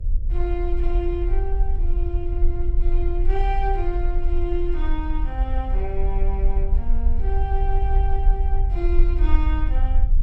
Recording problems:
hum; 50 Hz, harmonics up to 550 Hz, SNR 24 dB
rumble; below 46 Hz, strongest tone 20 Hz, SNR -7 dB

